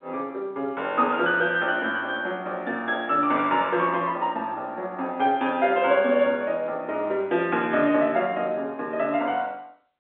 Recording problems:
phone line; 220 Hz to 3.6 kHz, G.711

